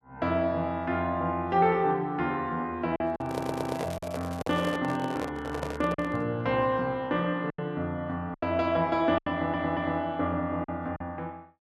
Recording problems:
lost packets; 5% of the sound replaced, filled with silence
handling noise; from 3 to 6.5 s; peak -1 dB vs average level
crackling; from 3.5 to 4.5 s; loose cable, SNR 20 dB
stutter; at 3.5 s and at 9.5 s

